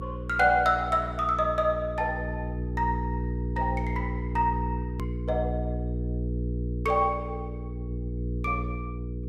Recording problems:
electrical hum; 60 Hz, harmonics up to 480 Hz, SNR 5 dB
edit click; at 5 s

